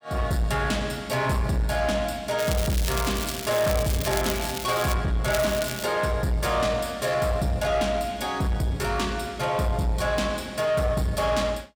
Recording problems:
distortion; soft clipping, signal-to-distortion ratio 12 dB
crackling; from 2.5 to 5 s and at 5.5 s; loose cable, SNR 7 dB

